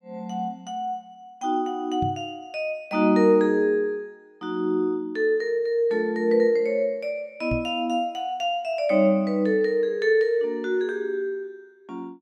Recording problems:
microphone bump; at 2 s and at 7.5 s; peak -2 dB vs average level

